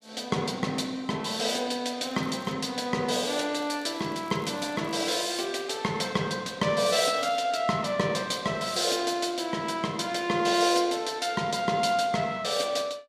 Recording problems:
crackle; at 2 s, from 3.5 to 5.5 s and at 7 s; loose cable, SNR 27 dB

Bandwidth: 14.5 kHz